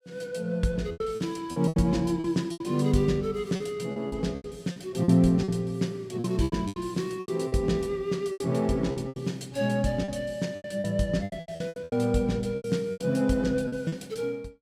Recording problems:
lost packets; 14% of the sound replaced, filled with repeated pitch periods

